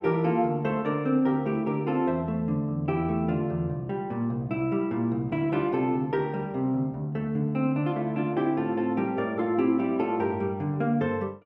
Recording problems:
none

